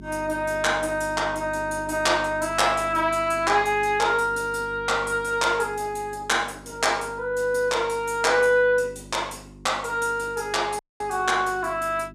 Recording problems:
hum; 50 Hz, harmonics up to 400 Hz, SNR 20 dB
dropout; at 11 s

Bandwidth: 14.5 kHz